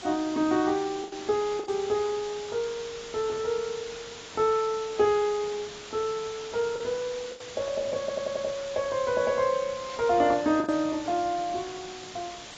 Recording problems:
lossy codec; AAC, log-spectral distance 10 dB
hiss; slope -1 dB per octave, SNR 13 dB
packet loss; 3% of the sound replaced, filled with the last packet
stutter; at 8 s
static burst; at 10 s; peak -14 dB vs average level

